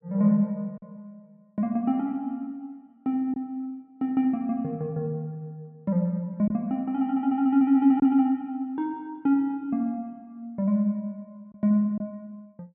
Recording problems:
lost packets; 1.2% of the sound replaced, filled with silence

